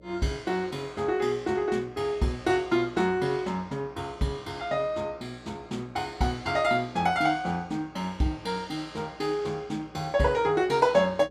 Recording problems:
electrical hum; 60 Hz, harmonics up to 600 Hz, SNR 25 dB

